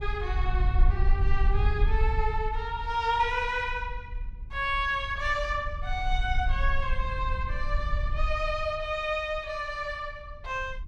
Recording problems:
wind noise; below 58 Hz, SNR 1 dB

